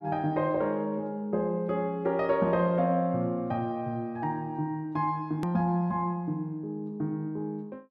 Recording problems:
click at an edit; at 5.5 s

